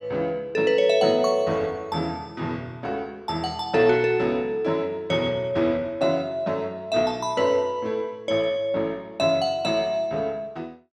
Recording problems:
none

